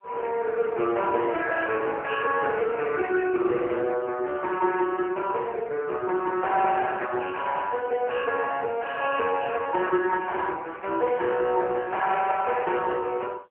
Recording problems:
phone line; 300 Hz to 2.8 kHz, AMR-NB

